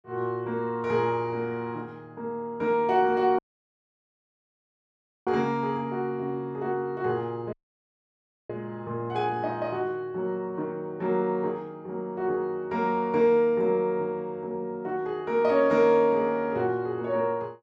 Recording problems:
dropout; at 3.5 s for 2 s and at 7.5 s for 1 s

